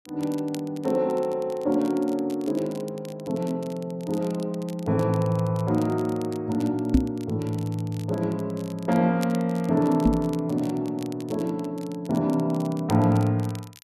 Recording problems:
crackling; vinyl, SNR 22 dB
knock on the microphone; at 7 s and at 10 s; peak +9 dB vs average level

